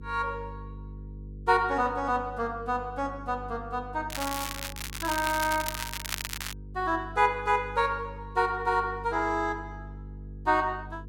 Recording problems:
electrical hum; 50 Hz, harmonics up to 500 Hz, SNR 15 dB
crackling; from 4 to 6.5 s; loose cable, SNR 6 dB

